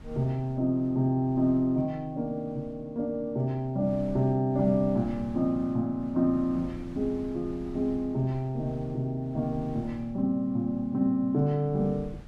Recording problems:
wind noise; below 140 Hz, SNR 20 dB

